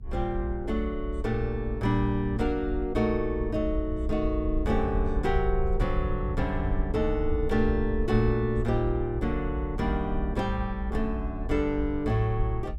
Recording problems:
low-frequency rumble; below 60 Hz, SNR 5 dB

